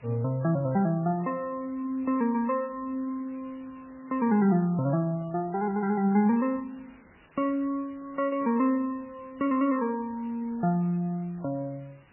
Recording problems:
lossy compression; MP3, log-spectral distance 5 dB, nothing above 2.6 kHz
hiss; SNR 29 dB

